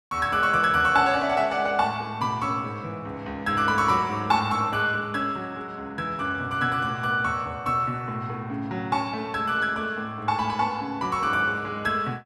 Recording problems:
none

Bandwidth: 14.5 kHz